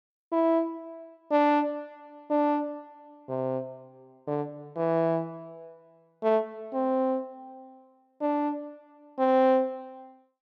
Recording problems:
none

